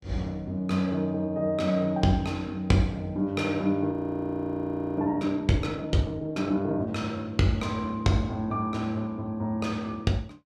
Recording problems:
frozen audio; at 4 s for 1 s

